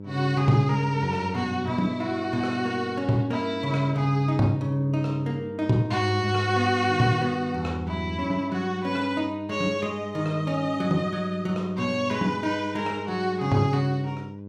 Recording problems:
hum; 50 Hz, harmonics up to 600 Hz, SNR 14 dB

